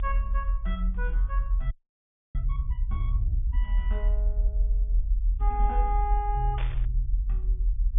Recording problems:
low-pass filter; nothing above 3.6 kHz
rumble; below 46 Hz, strongest tone 44 Hz, SNR -7 dB
audio freezing; at 1.5 s for 0.5 s
static burst; at 6.5 s; peak 0 dB vs average level

